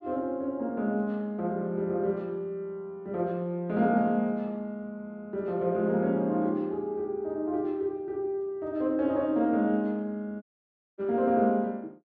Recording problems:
dropout; at 10 s for 0.5 s

